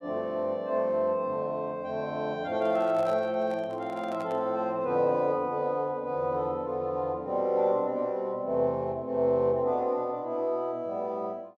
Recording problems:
microphone handling noise; from 2.5 to 4.5 s; peak -9 dB vs average level

